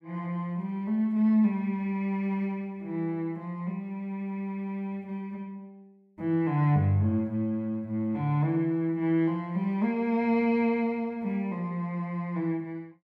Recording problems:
none

